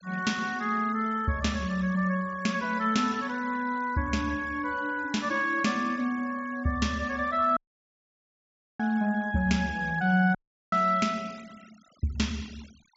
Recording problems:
treble cut off; nothing above 8 kHz
denoising artefacts; signal-to-artefact ratio 23 dB
audio cutting out; at 7.5 s for 1 s and at 10 s

